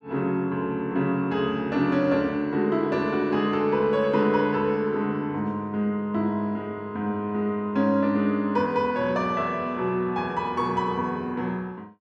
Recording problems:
none

